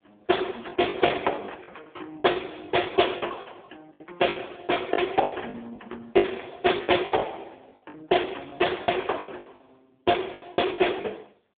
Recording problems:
telephone audio; 300 Hz to 3.5 kHz, AMR-NB
packet loss; 14% of the sound replaced, filled with the last packet

